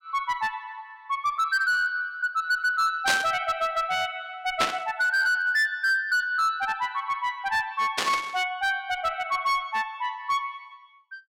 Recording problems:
distortion; hard clipping, signal-to-distortion ratio 12 dB
static burst; at 3 s, at 4.5 s and at 8 s; peak +4 dB vs average level

